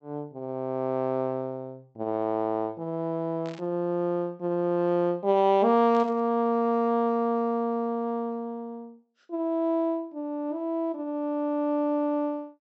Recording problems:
treble cut off; nothing above 7.9 kHz
burst of static; at 3.5 s and at 6 s; peak -16 dB vs average level

